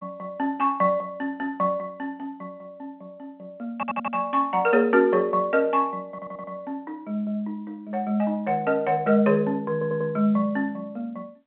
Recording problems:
phone line; 150 Hz to 3.9 kHz, G.711
stutter; at 4 s, at 6 s and at 9.5 s

